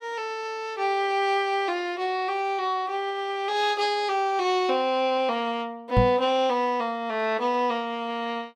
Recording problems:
knock on the microphone; at 6 s; peak +6 dB vs average level

